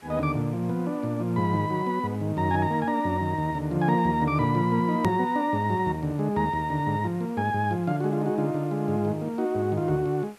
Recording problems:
hiss; SNR 27 dB
edit click; at 5 s

